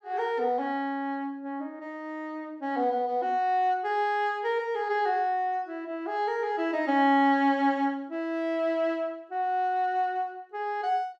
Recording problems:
none

